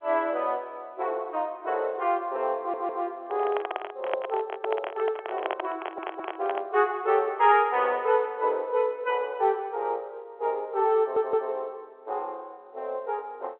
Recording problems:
telephone audio; 340 Hz to 3.4 kHz, G.711
audio stuttering; at 2.5 s, at 6 s and at 11 s
handling noise; from 3.5 to 6.5 s; peak +2 dB vs average level

